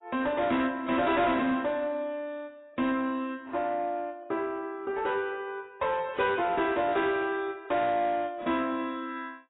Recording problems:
lossy codec; AAC, log-spectral distance 2 dB, nothing above 3.8 kHz
distortion; soft clipping, signal-to-distortion ratio 11 dB

